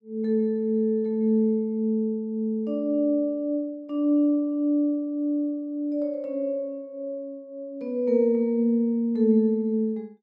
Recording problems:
none

